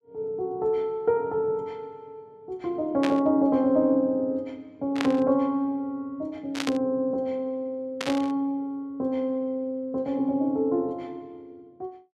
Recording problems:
burst of static; 4 times, first at 3 s; peak +1 dB vs average level

